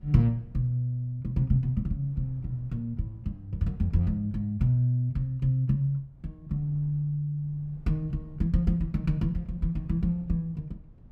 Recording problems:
wind noise; below 130 Hz, SNR 22 dB

